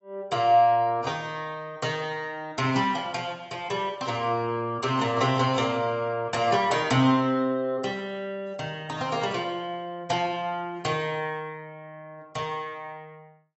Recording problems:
codec artefacts; AAC, log-spectral distance 2 dB, nothing above 7.8 kHz

